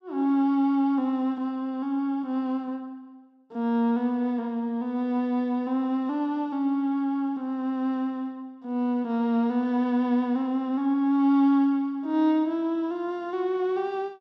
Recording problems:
none

